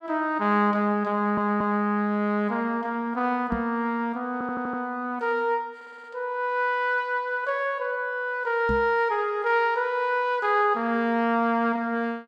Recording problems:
stutter; at 1 s, at 4.5 s and at 6 s
microphone bump; at 3.5 s and at 8.5 s; peak -2 dB vs average level

